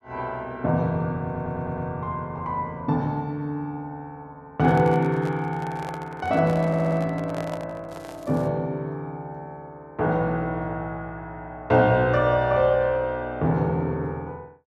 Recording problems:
audio stuttering; at 1.5 s and at 6.5 s
microphone handling noise; from 4.5 to 8.5 s; peak -7 dB vs average level
crackling; at 8 s; loose cable, SNR 28 dB

